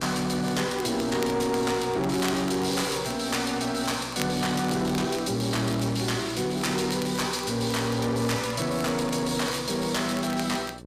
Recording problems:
distorted audio; soft clipping, signal-to-distortion ratio 11 dB
electrical hum; 60 Hz, harmonics up to 1.1 kHz, SNR 19 dB
crackling; vinyl, SNR 17 dB

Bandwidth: 15 kHz